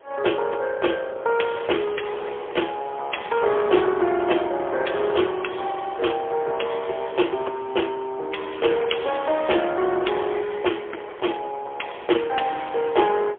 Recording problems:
phone line; 300 Hz to 3.4 kHz, AMR-NB, then MP3
wind on the microphone; below 1 kHz, SNR 23 dB

